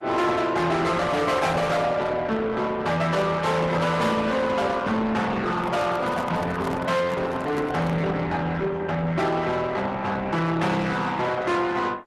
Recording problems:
codec artefacts; Opus, log-spectral distance 3 dB, nothing above 13.1 kHz
distorted audio; soft clipping, signal-to-distortion ratio 7 dB
microphone handling noise; from 5.5 to 8 s; peak +1 dB vs average level

